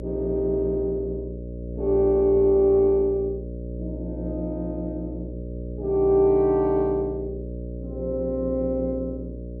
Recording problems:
hum; 60 Hz, harmonics up to 600 Hz, SNR 11 dB

